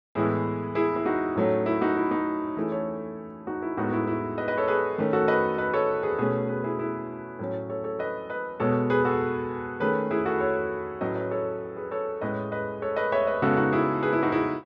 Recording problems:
none

